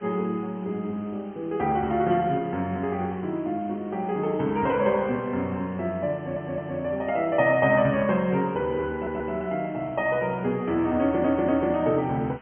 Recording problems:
treble missing; nothing above 3.1 kHz
hiss; SNR 27 dB
audio stuttering; at 6 s, at 9 s and at 11 s

